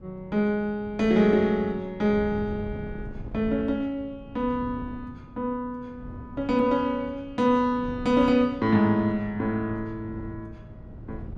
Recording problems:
wind noise; below 200 Hz, SNR 16 dB

